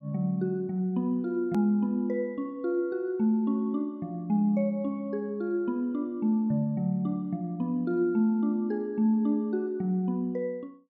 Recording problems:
hard cut with a click; at 1.5 s

